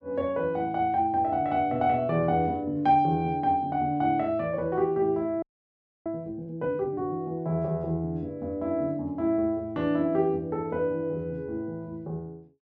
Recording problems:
audio freezing; at 5.5 s for 0.5 s

